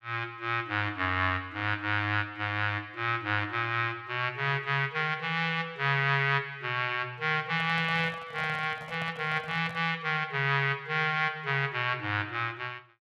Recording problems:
handling noise; from 7.5 to 10 s; peak -10 dB vs average level

